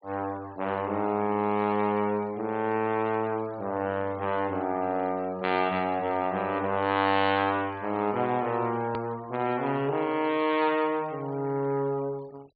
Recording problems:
treble cut off; nothing above 4.7 kHz
noise reduction artefacts; signal-to-artefact ratio 25 dB
click at an edit; at 9 s

